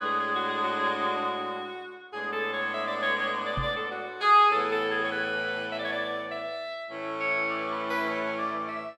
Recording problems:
microphone thump; at 3.5 s; peak -3 dB vs average level

